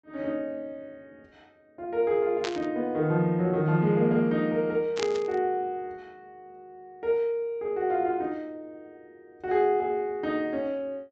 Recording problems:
treble cut off; nothing above 8 kHz
burst of static; at 2.5 s and at 5 s; peak -1 dB vs average level

